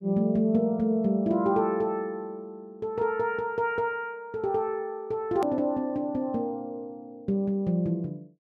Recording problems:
edit click; at 5.5 s

